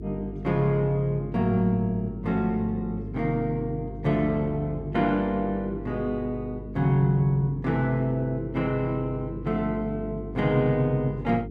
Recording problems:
electrical hum; 50 Hz, harmonics up to 450 Hz, SNR 11 dB

